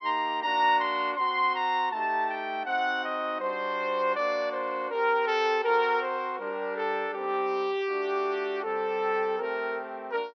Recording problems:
low-pass filter; nothing above 6.1 kHz

